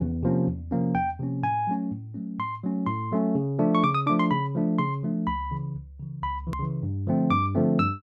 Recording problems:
click at an edit; at 6.5 s

